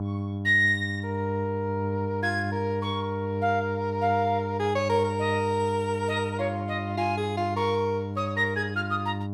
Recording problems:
electrical hum; 50 Hz, harmonics up to 1 kHz, SNR 6 dB

